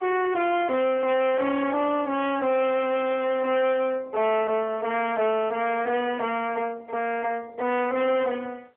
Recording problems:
telephone audio; 300 Hz to 3.3 kHz, AMR-NB
distortion; soft clipping, signal-to-distortion ratio 6 dB

